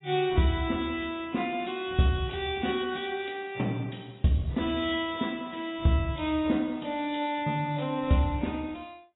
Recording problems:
lossy compression; AAC, log-spectral distance 4 dB, nothing above 3.7 kHz

